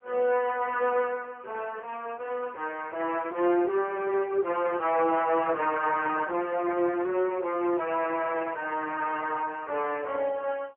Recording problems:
telephone audio; 320 Hz to 3.1 kHz, AMR-NB

